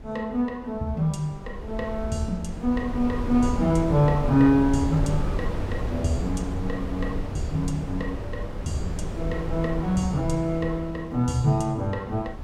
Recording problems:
wind noise; below 170 Hz, SNR 7 dB

